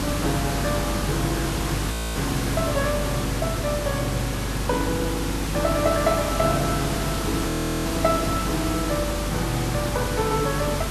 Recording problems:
hum; 50 Hz, harmonics up to 550 Hz, SNR 5 dB
hiss; slope -3 dB per octave, SNR 2 dB
audio freezing; at 2 s and at 7.5 s

